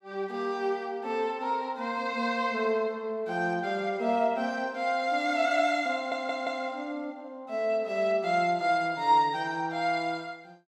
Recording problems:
stutter; at 6 s

